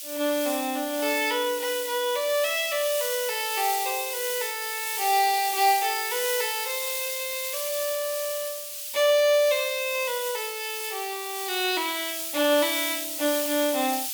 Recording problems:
hiss; SNR 4 dB

